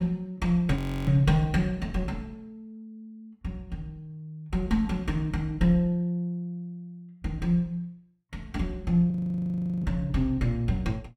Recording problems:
frozen audio; at 1 s and at 9 s for 0.5 s

